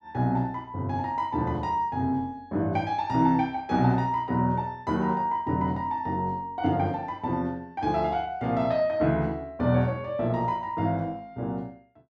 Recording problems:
none

